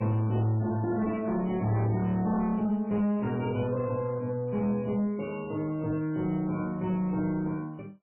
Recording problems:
codec artefacts; MP3, log-spectral distance 2 dB, nothing above 2.4 kHz
distortion; soft clipping, signal-to-distortion ratio 9 dB

